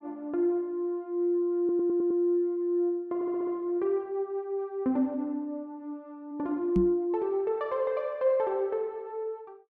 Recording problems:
audio stuttering; at 1.5 s and at 3 s
microphone thump; at 7 s; peak +5 dB vs average level

